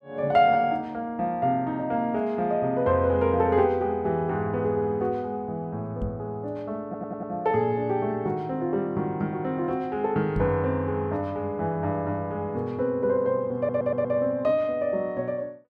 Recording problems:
knock on the microphone; at 6 s and at 10 s; peak -1 dB vs average level
audio stuttering; at 7 s and at 14 s

